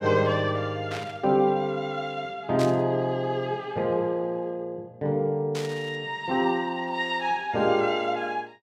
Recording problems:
burst of static; at 1 s, at 2.5 s and at 5.5 s; peak -5 dB vs average level

